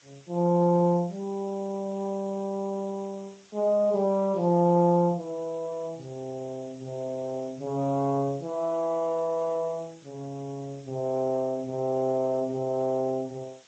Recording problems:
lossy codec; Speex, then Vorbis, log-spectral distance 6 dB
hiss; slope +1 dB per octave, SNR 27 dB

